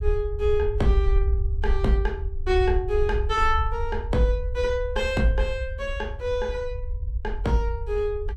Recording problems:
low-frequency rumble; below 68 Hz, SNR 4 dB

